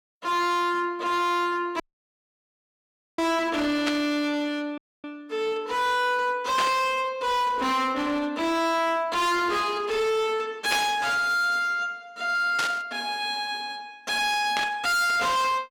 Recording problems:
distorted audio; hard clipping, uneven, signal-to-distortion ratio 7 dB
audio cutting out; at 2 s for 1.5 s and at 5 s
burst of static; 5 times, first at 4 s; peak +1 dB vs average level

